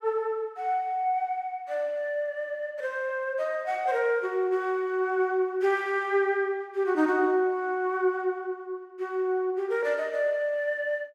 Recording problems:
none

